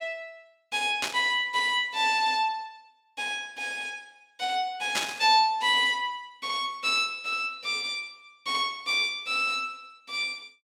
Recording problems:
static burst; at 1 s and at 5 s; peak +3 dB vs average level

